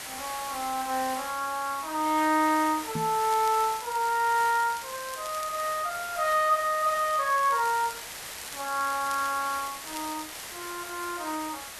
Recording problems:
background hiss; SNR 11 dB
knock on the microphone; at 3 s; peak -2 dB vs average level
crackle; from 3 to 5.5 s and from 7 to 11 s; loose cable, SNR 18 dB

